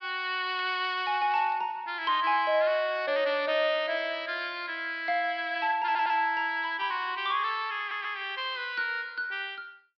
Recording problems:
treble cut off; nothing above 5.5 kHz
crackle; from 0.5 to 1.5 s; loose cable, SNR 25 dB
stutter; at 6 s and at 8 s

